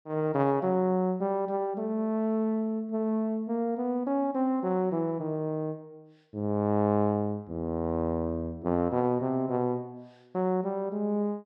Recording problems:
none

